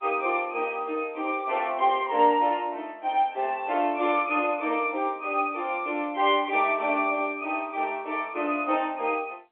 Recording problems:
phone line; 260 Hz to 3.5 kHz, G.711

